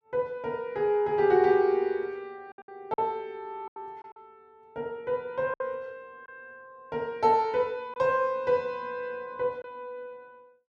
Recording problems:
lost packets; 4% of the sound replaced, filled with silence

